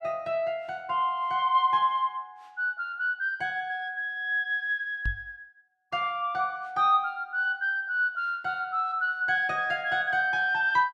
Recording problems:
microphone bump; at 5 s; peak -2 dB vs average level

